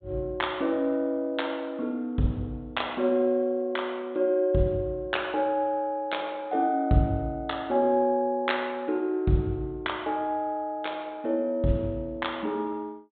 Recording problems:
treble cut off; nothing above 4 kHz

